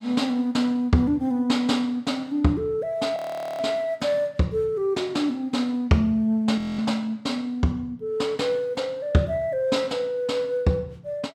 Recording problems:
audio freezing; at 3 s and at 6.5 s

